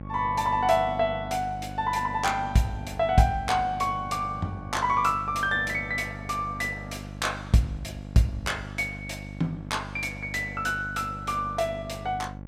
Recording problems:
hum; 50 Hz, harmonics up to 1.1 kHz, SNR 12 dB

